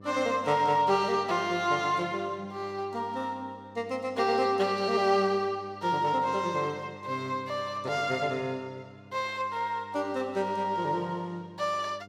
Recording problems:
hum; 50 Hz, harmonics up to 1.1 kHz, SNR 21 dB

